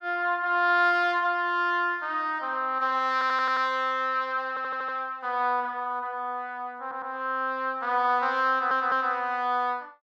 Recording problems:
stutter; 4 times, first at 3 s

